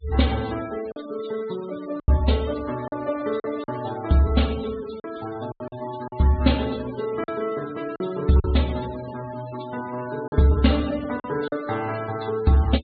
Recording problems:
treble missing; nothing above 4.4 kHz
noise reduction artefacts; signal-to-artefact ratio 18 dB
lost packets; 5% of the sound replaced, filled with silence

